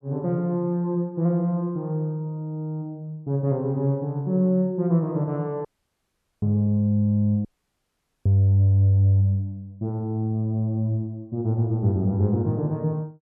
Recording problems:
dropout; at 5.5 s for 1 s and at 7.5 s for 1 s

